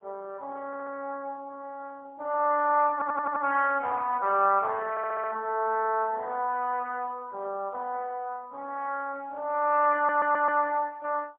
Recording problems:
telephone audio; 280 Hz to 3.1 kHz, AMR-NB, then MP3
stutter; 4 times, first at 0.5 s

